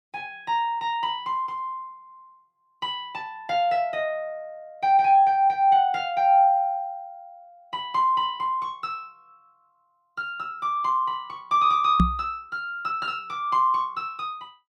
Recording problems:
microphone thump; at 12 s; peak +7 dB vs average level

